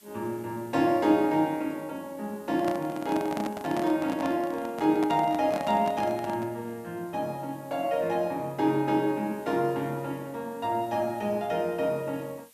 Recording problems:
background hiss; slope +2 dB per octave, SNR 26 dB
handling noise; from 2.5 to 6.5 s; peak -3 dB vs average level

